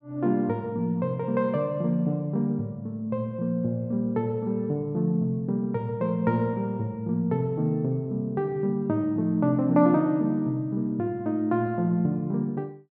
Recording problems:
none

